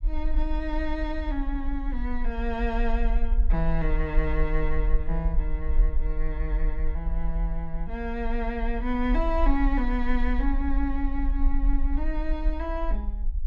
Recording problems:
low-frequency rumble; below 42 Hz, strongest tone 18 Hz, SNR -1 dB

